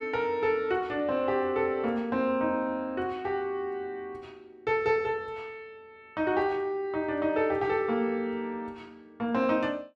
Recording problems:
none

